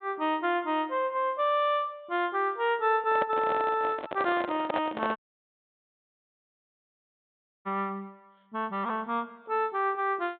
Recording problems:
treble missing; nothing above 4 kHz
microphone handling noise; from 3 to 5 s; peak +2 dB vs average level
dropout; at 5 s for 2.5 s

